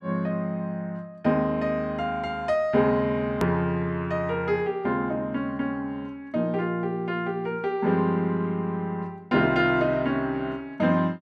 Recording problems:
edit click; at 3.5 s

